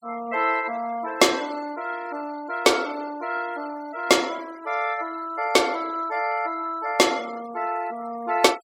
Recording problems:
denoising artefacts; signal-to-artefact ratio 20 dB

